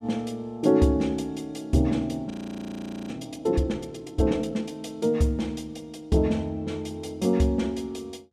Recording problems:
audio freezing; at 2.5 s for 1 s

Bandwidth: 14.5 kHz